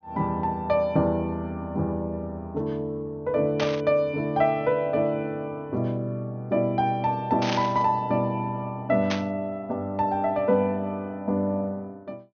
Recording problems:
low-pass filter; nothing above 6.4 kHz
burst of static; at 3.5 s, at 7.5 s and at 9 s; peak 0 dB vs average level

